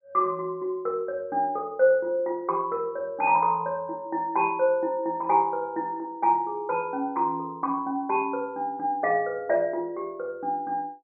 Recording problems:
none

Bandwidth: 2.5 kHz